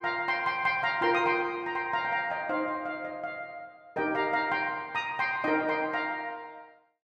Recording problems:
none

